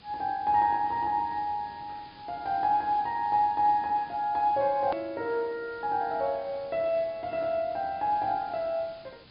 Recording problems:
low-pass filter; nothing above 5.1 kHz
hiss; SNR 25 dB
hard cut with a click; at 5 s

